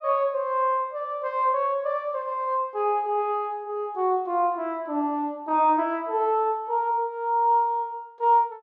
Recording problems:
none

